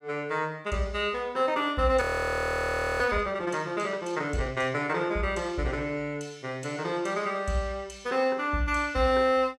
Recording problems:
frozen audio; at 2 s for 1 s

